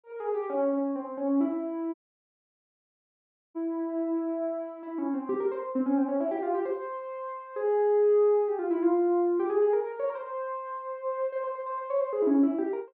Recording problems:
dropout; at 2 s for 1.5 s

